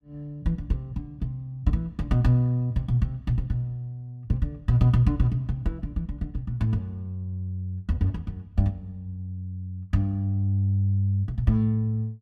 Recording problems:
none

